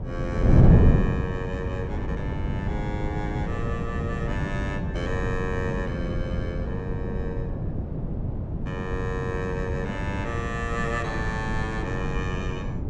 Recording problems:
wind noise; below 190 Hz, SNR -6 dB

